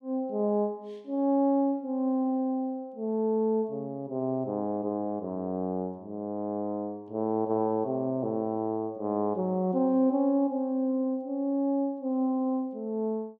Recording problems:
none

